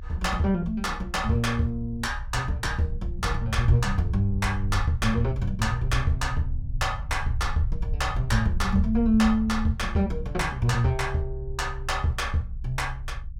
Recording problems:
low-frequency rumble; below 70 Hz, SNR 8 dB

